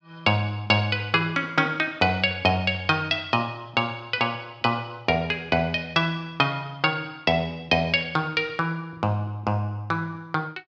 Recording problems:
none

